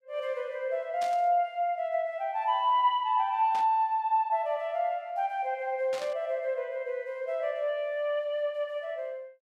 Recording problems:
burst of static; at 1 s, at 3.5 s and at 6 s; peak -9 dB vs average level

